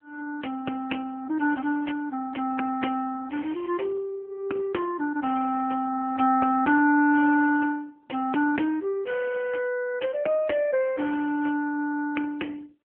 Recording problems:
phone line; 220 Hz to 3 kHz, AMR-NB

